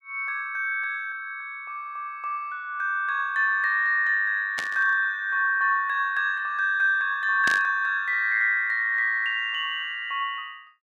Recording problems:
burst of static; at 4.5 s and at 7.5 s; peak -2 dB vs average level

